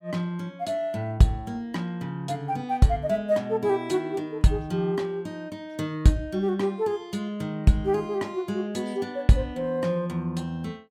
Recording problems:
none

